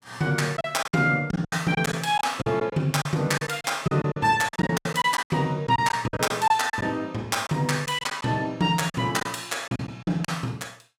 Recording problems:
lost packets; 12% of the sound replaced, filled with silence

